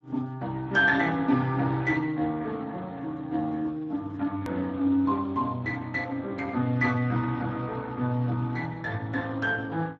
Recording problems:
codec artefacts; Speex, log-spectral distance 3 dB, nothing above 13.1 kHz
edit click; at 4.5 s

